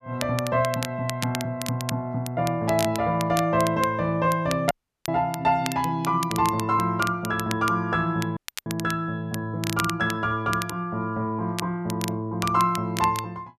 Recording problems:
crackle; vinyl, SNR 11 dB
audio cutting out; at 4.5 s and at 8.5 s

